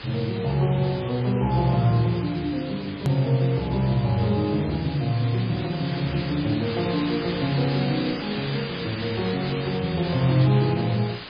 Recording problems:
lossy codec; MP3, log-spectral distance 14 dB, nothing above 13.1 kHz
background hiss; SNR 11 dB
edit click; at 3 s

